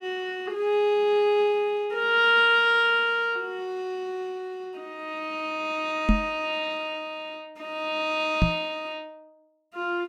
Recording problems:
knock on the microphone; at 6 s and at 8.5 s; peak +7 dB vs average level

